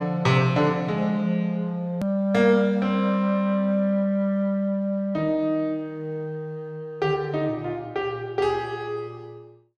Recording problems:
edit click; at 2 s

